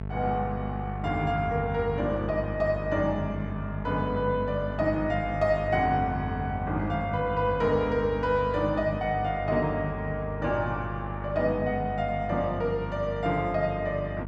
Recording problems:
electrical hum; 50 Hz, harmonics up to 900 Hz, SNR 8 dB

